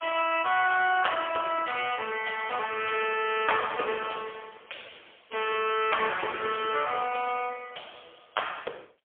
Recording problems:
telephone audio; 340 Hz to 3.3 kHz, AMR-NB, then MP3

